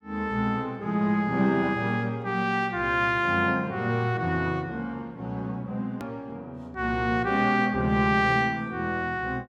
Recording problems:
hard cut with a click; at 6 s

